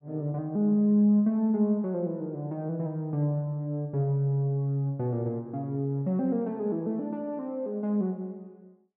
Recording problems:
none

